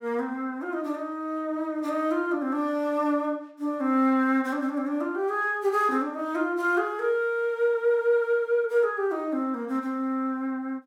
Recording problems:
none

